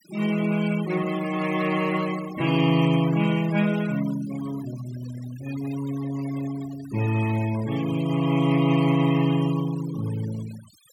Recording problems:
denoising artefacts; signal-to-artefact ratio 16 dB

